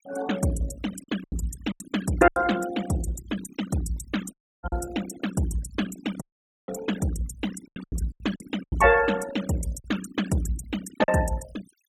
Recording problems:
noise reduction artefacts; signal-to-artefact ratio 13 dB
lost packets; 7% of the sound replaced, filled with silence
dropout; at 4.5 s and at 6 s

